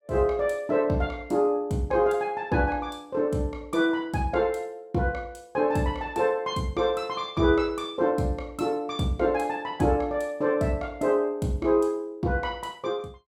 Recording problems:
none

